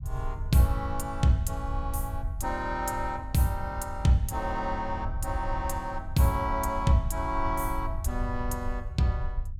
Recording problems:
rumble; below 78 Hz, SNR 7 dB

